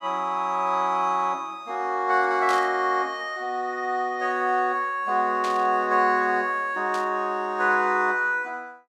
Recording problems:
static burst; at 2.5 s, at 5.5 s and at 7 s; peak -8 dB vs average level

